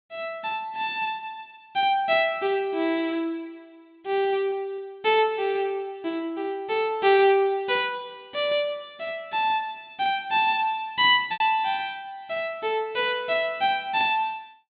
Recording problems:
low-pass filter; nothing above 4.2 kHz
lost packets; 0.9% of the sound replaced, filled with repeated pitch periods

